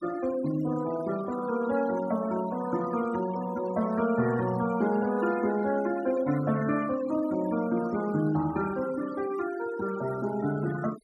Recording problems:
noise reduction artefacts; signal-to-artefact ratio 15 dB

